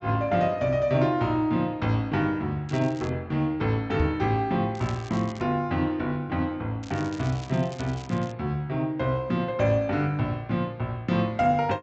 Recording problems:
treble cut off; nothing above 8 kHz
crackle; at 2.5 s, at 5 s and from 7 to 8.5 s; loose cable, SNR 21 dB
knock on the microphone; at 4 s; peak +3 dB vs average level

